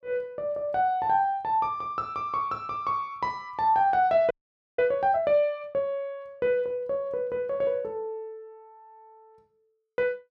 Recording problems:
audio freezing; at 4.5 s

